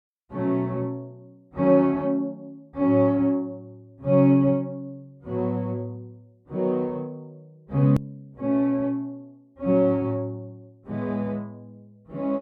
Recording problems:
click at an edit; at 8 s

